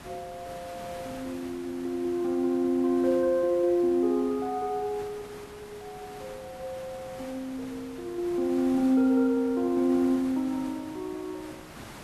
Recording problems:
hiss; slope -4 dB per octave, SNR 18 dB

